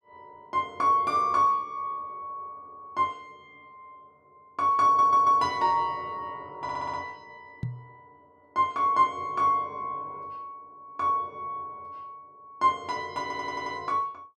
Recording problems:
stutter; at 5 s, at 6.5 s and at 13 s
microphone bump; at 7.5 s; peak -3 dB vs average level

